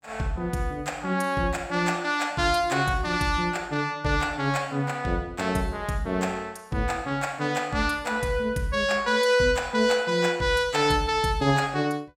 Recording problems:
none

